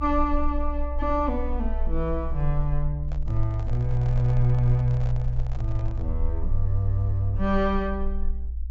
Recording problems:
treble missing; nothing above 8 kHz
rumble; below 60 Hz, strongest tone 22 Hz, SNR 4 dB
microphone handling noise; from 3 to 6 s; peak -12 dB vs average level

